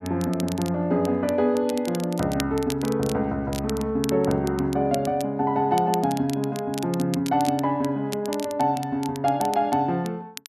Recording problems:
crackle; vinyl, SNR 15 dB

